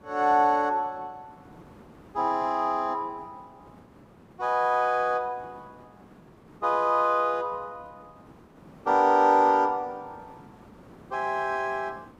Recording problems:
background hiss; SNR 26 dB

